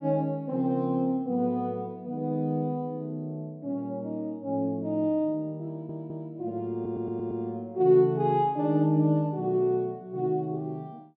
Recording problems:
stutter; at 5.5 s and at 6.5 s

